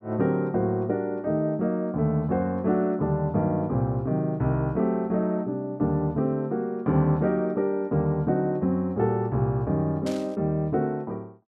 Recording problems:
burst of static; at 10 s; peak -9 dB vs average level

